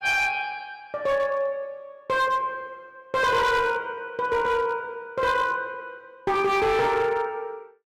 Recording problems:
distortion; hard clipping, signal-to-distortion ratio 10 dB

